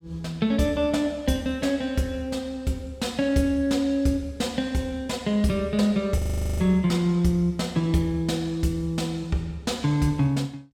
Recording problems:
audio freezing; at 6 s

